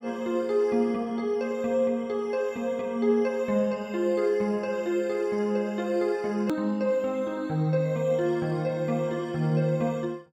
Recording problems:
edit click; at 6.5 s

